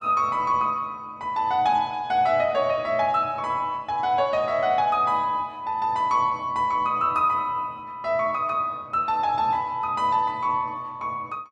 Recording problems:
none

